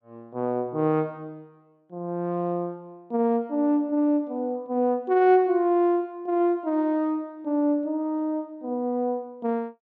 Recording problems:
none

